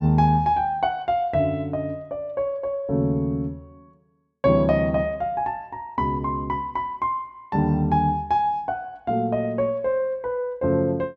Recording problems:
none

